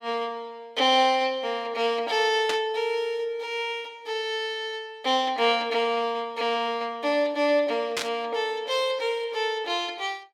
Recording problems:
burst of static; at 2.5 s and at 8 s; peak +1 dB vs average level

